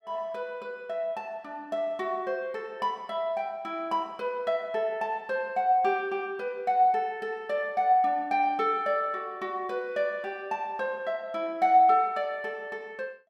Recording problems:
none

